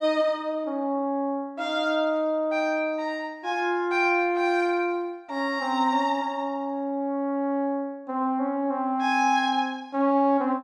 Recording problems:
none

